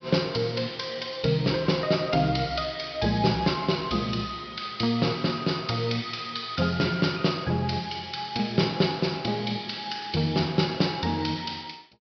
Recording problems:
low-pass filter; nothing above 5.5 kHz

